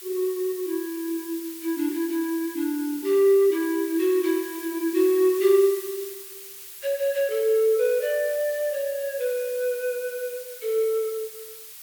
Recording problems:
background hiss; SNR 14 dB

